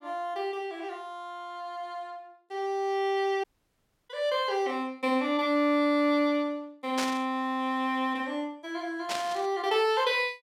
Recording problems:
dropout; at 3.5 s for 0.5 s
static burst; at 7 s and at 9 s; peak 0 dB vs average level

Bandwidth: 16.5 kHz